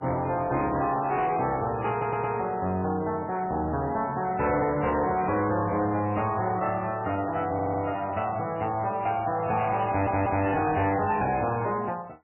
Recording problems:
lossy compression; MP3, log-spectral distance 4 dB, nothing above 2.5 kHz
distorted audio; soft clipping, signal-to-distortion ratio 11 dB
stutter; at 2 s, at 7.5 s and at 10 s

